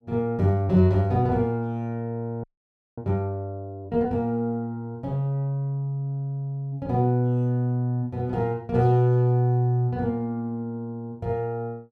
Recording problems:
frozen audio; at 2.5 s for 0.5 s

